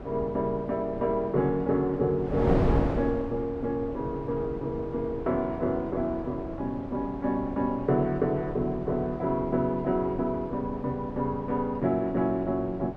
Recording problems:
wind noise; below 480 Hz, SNR 8 dB

